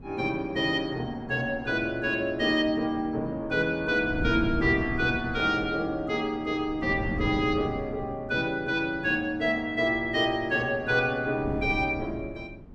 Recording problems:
wind noise; below 250 Hz, SNR 12 dB

